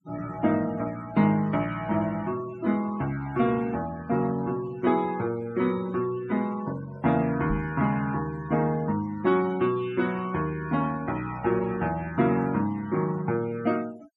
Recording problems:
noise reduction artefacts; signal-to-artefact ratio 20 dB
microphone bump; at 7.5 s; peak -1 dB vs average level

